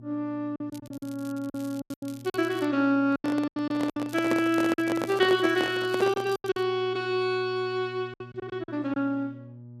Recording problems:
electrical hum; 60 Hz, harmonics up to 600 Hz, SNR 19 dB
lost packets; 10% of the sound replaced, filled with silence
crackle; from 0.5 to 2.5 s and from 4 to 6.5 s; loose cable, SNR 22 dB
handling noise; from 3 to 6.5 s; peak +2 dB vs average level

